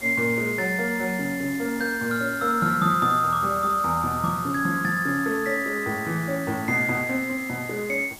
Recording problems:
hiss; SNR 16 dB

